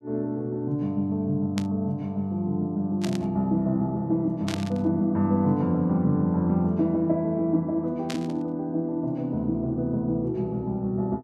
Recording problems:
static burst; 4 times, first at 1.5 s; peak -4 dB vs average level

